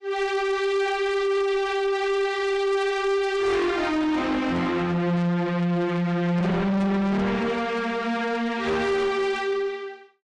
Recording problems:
codec artefacts; AAC, log-spectral distance 2 dB
distortion; soft clipping, signal-to-distortion ratio 7 dB

